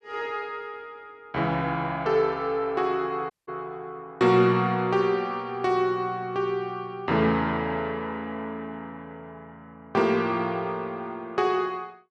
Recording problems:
audio cutting out; at 3.5 s

